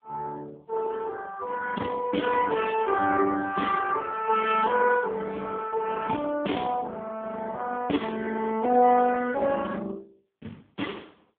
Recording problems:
phone line; 220 Hz to 2.8 kHz, AMR-NB

